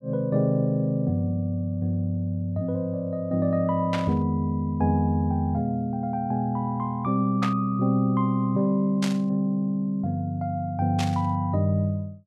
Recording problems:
burst of static; 4 times, first at 4 s; peak -2 dB vs average level

